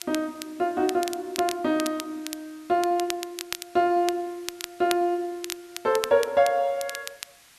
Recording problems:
background hiss; slope +1 dB per octave, SNR 26 dB
crackle; vinyl, SNR 11 dB

